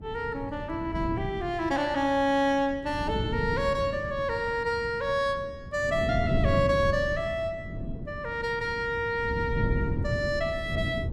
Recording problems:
wind noise; below 210 Hz, SNR 6 dB

